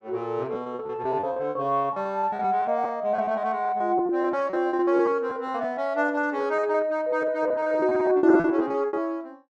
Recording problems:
lost packets; 18% of the sound replaced, filled with repeated pitch periods

